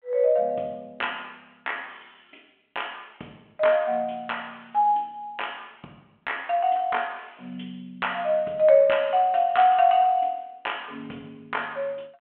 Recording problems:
telephone audio; 190 Hz to 3.3 kHz, G.726

